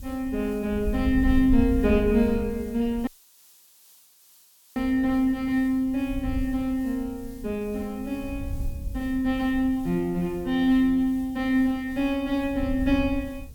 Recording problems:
hiss; SNR 27 dB
wind on the microphone; below 76 Hz, SNR 11 dB
dropout; at 3 s for 1.5 s

